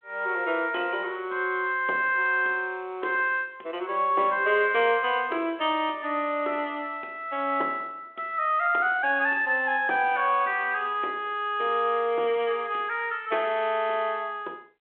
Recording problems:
phone line; 300 Hz to 3.5 kHz, G.726

